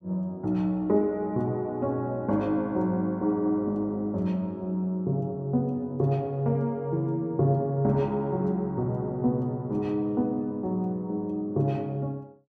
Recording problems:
none

